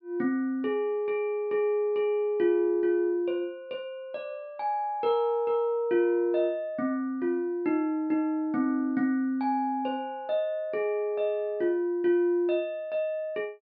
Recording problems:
treble cut off; nothing above 5.5 kHz

